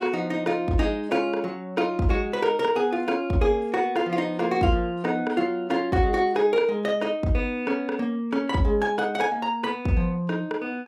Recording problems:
none

